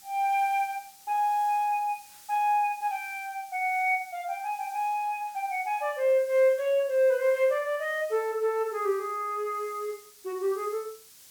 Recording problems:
background hiss; SNR 22 dB

